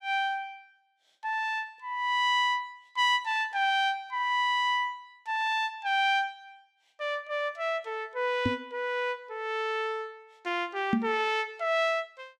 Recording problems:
knock on the microphone; at 8.5 s and at 11 s; peak +6 dB vs average level

